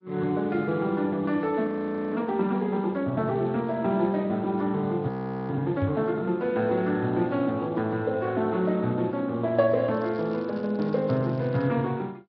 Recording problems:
low-pass filter; nothing above 5.5 kHz
lossy codec; MP2, then Speex, log-spectral distance 2 dB
audio freezing; at 1.5 s and at 5 s
microphone bump; at 6 s; peak 0 dB vs average level
crackling; from 10 to 12 s; loose cable, SNR 29 dB

